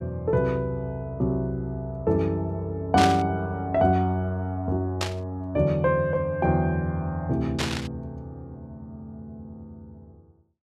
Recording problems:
static burst; at 3 s, at 5 s and at 7.5 s; peak +2 dB vs average level

